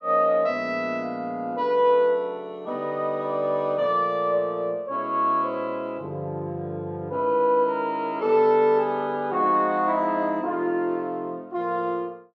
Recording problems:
none

